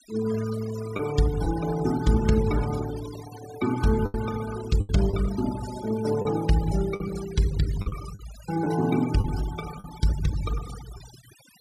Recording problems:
noise reduction artefacts; signal-to-artefact ratio 14 dB
packet loss; 4% of the sound replaced, filled with the last packet

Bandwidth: 14.5 kHz